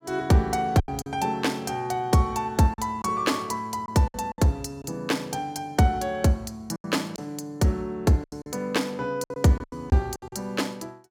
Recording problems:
packet loss; 8% of the sound replaced, filled with silence

